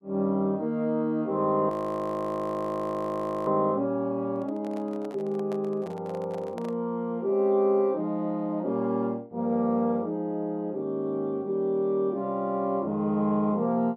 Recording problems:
audio freezing; at 1.5 s for 2 s
microphone handling noise; from 4.5 to 7 s; peak -10 dB vs average level

